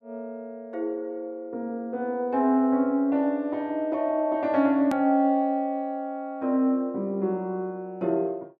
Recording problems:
edit click; at 5 s

